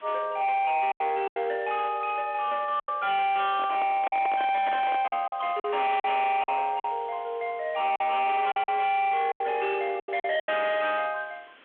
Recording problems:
telephone audio; 950 Hz to 3.8 kHz, G.726
distortion; hard clipping, signal-to-distortion ratio 7 dB
hiss; SNR 26 dB
packet loss; 8% of the sound replaced, filled with silence
handling noise; from 3.5 to 5 s; peak -3 dB vs average level

